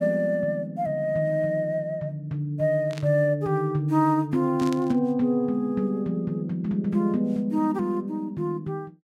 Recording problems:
burst of static; at 3 s and at 4.5 s; peak -9 dB vs average level

